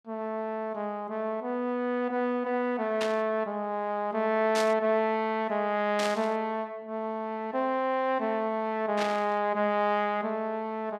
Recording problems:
burst of static; 4 times, first at 3 s; peak -1 dB vs average level

